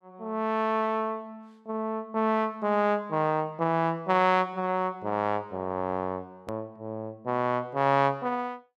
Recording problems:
click at an edit; at 6.5 s

